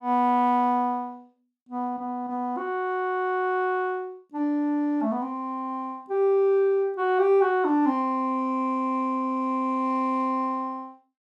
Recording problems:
none

